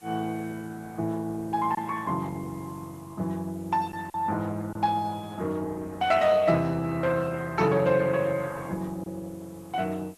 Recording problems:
lossy codec; Opus, log-spectral distance 2 dB
background hiss; slope -1 dB per octave, SNR 27 dB
packet loss; 1.1% of the sound replaced, filled with silence

